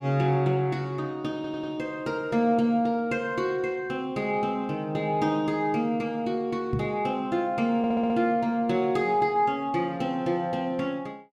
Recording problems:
audio stuttering; at 1.5 s and at 8 s
microphone bump; at 6.5 s; peak +1 dB vs average level

